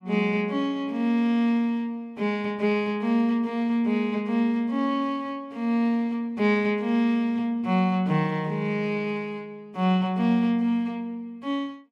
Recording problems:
none

